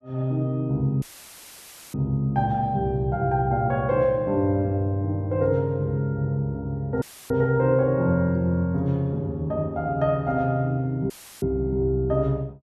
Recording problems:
audio cutting out; at 1 s for 1 s, at 7 s and at 11 s; filled with static

